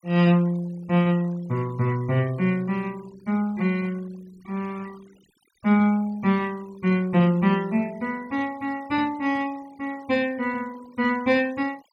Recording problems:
noise reduction artefacts; signal-to-artefact ratio 25 dB

